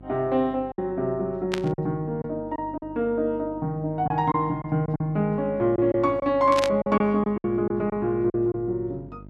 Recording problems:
hum; 50 Hz, harmonics up to 700 Hz, SNR 21 dB
lost packets; 7% of the sound replaced, filled with silence
static burst; at 1.5 s and at 6.5 s; peak 0 dB vs average level

